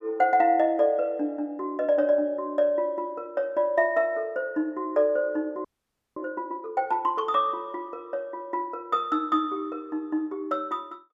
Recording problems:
audio freezing; at 5.5 s for 0.5 s

